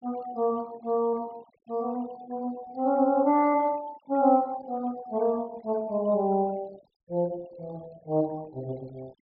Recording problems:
low-pass filter; nothing above 5 kHz
denoising artefacts; signal-to-artefact ratio 25 dB

